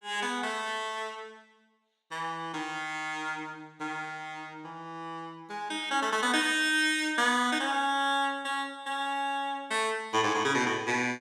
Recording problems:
none

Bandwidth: 17 kHz